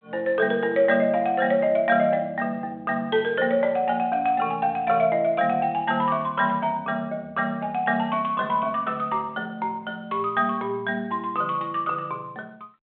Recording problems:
phone line; 260 Hz to 3.7 kHz, G.726

